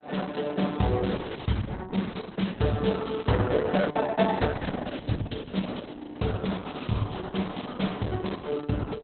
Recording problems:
lossy compression; Opus, log-spectral distance 6 dB, nothing above 4 kHz
audio freezing; at 6 s

